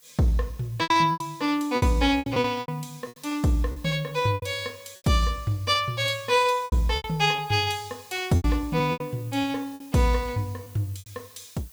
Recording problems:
hiss; slope 0 dB per octave, SNR 25 dB
lost packets; 11% of the sound replaced, filled with repeated pitch periods

